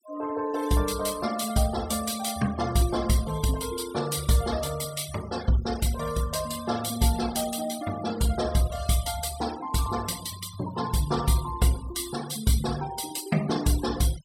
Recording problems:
denoising artefacts; signal-to-artefact ratio 13 dB

